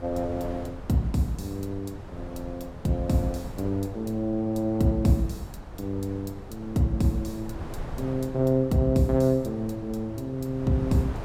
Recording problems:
wind on the microphone; below 370 Hz, SNR 13 dB

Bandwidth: 16 kHz